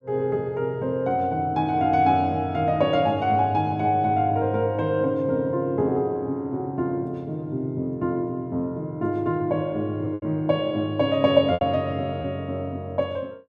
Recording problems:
lost packets; 1.4% of the sound replaced, filled with repeated pitch periods

